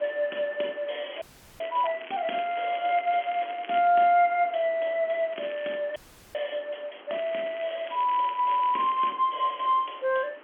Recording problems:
phone line; 260 Hz to 3.3 kHz, G.711
hiss; SNR 22 dB
crackle; from 1 to 4 s, at 5.5 s and from 7 to 9 s; loose cable, SNR 19 dB
audio freezing; at 1 s and at 6 s

